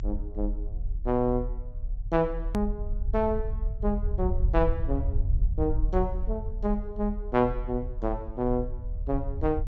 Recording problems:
low-pass filter; nothing above 7.5 kHz
low-frequency rumble; below 60 Hz, strongest tone 38 Hz, SNR 3 dB
edit click; at 2.5 s

